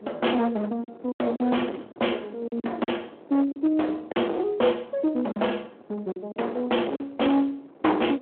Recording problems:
telephone audio; 260 Hz to 3.4 kHz, Speex
distortion; hard clipping, signal-to-distortion ratio 9 dB
wind on the microphone; below 700 Hz, SNR 21 dB
packet loss; 7% of the sound replaced, filled with silence

